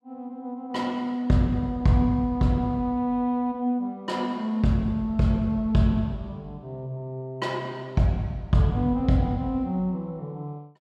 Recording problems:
none

